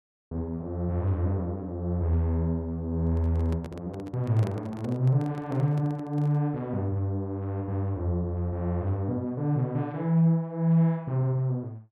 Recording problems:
handling noise; from 3 to 6.5 s; peak -6 dB vs average level

